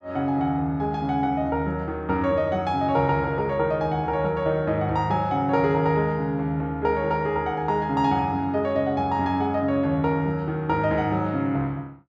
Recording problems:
none

